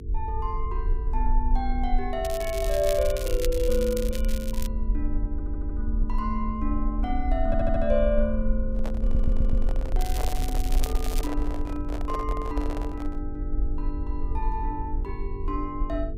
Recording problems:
hum; 50 Hz, harmonics up to 450 Hz, SNR 10 dB
low-frequency rumble; below 48 Hz, SNR 0 dB
crackle; from 2 to 4.5 s and from 10 to 11 s; loose cable, SNR 8 dB
stutter; at 5.5 s, at 7.5 s and at 9 s
handling noise; from 8.5 to 13 s; peak 0 dB vs average level

